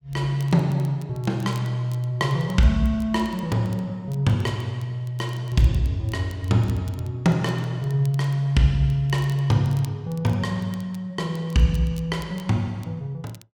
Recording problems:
crackle; vinyl, SNR 27 dB

